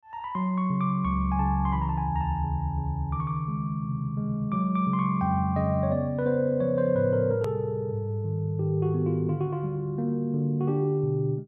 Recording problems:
hard cut with a click; at 7.5 s

